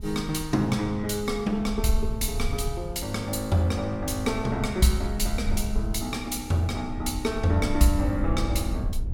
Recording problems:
low-frequency rumble; below 68 Hz, SNR 7 dB

